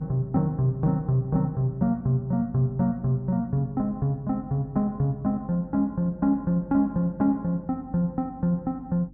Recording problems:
hum; 50 Hz, harmonics up to 300 Hz, SNR 21 dB

